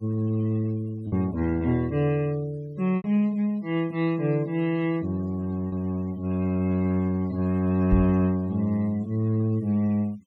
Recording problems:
noise reduction artefacts; signal-to-artefact ratio 24 dB
packet loss; 1.6% of the sound replaced, filled with repeated pitch periods
knock on the microphone; at 8 s; peak +5 dB vs average level

